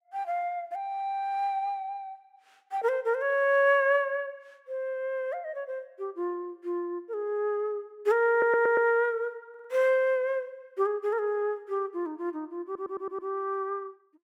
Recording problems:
stutter; at 8.5 s, at 9.5 s and at 13 s

